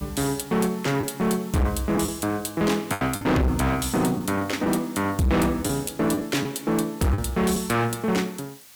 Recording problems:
distorted audio; hard clipping, uneven, signal-to-distortion ratio 8 dB
hiss; slope +2 dB per octave, SNR 21 dB
packet loss; 5% of the sound replaced, filled with the last packet

